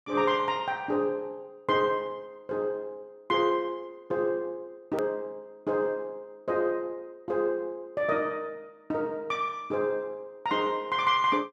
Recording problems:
click at an edit; at 5 s

